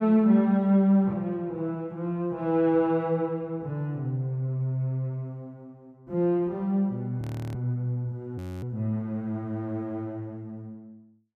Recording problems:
frozen audio; at 7 s and at 8.5 s

